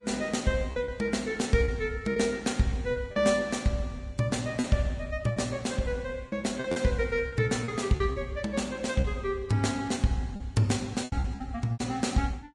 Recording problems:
lossy codec; Vorbis, log-spectral distance 3 dB
lost packets; 7% of the sound replaced, filled with repeated pitch periods

